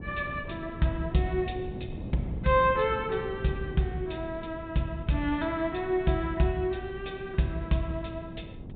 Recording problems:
treble missing; nothing above 4 kHz
wind on the microphone; below 260 Hz, SNR 12 dB

